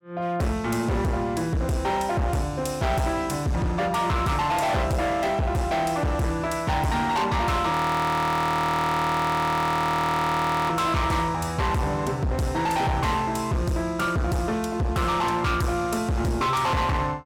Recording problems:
distortion; hard clipping, signal-to-distortion ratio 6 dB
frozen audio; at 7.5 s for 3 s

